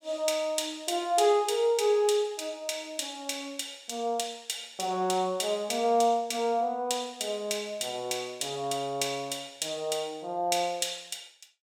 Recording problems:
none

